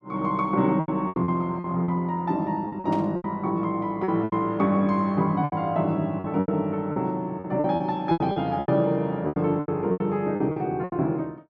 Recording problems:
lost packets; 13% of the sound replaced, filled with repeated pitch periods
burst of static; at 3 s; peak -13 dB vs average level

